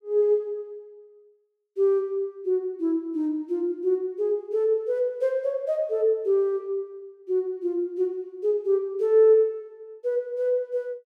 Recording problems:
none

